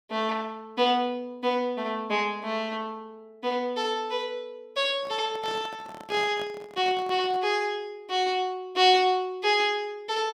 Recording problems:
handling noise; from 5 to 7.5 s; peak -10 dB vs average level

